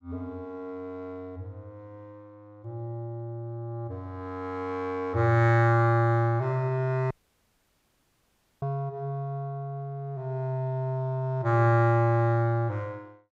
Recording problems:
dropout; at 7 s for 1.5 s

